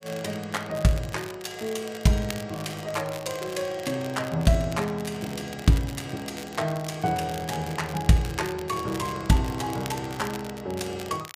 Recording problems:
crackling; vinyl, SNR 15 dB

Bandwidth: 15 kHz